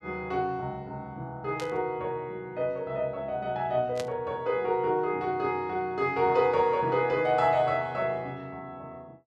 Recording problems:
static burst; at 1.5 s and at 4 s; peak -6 dB vs average level

